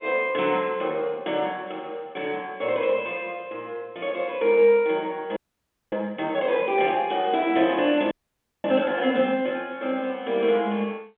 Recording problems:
telephone audio; 260 Hz to 3.5 kHz, G.711
frozen audio; at 5.5 s for 0.5 s and at 8 s for 0.5 s

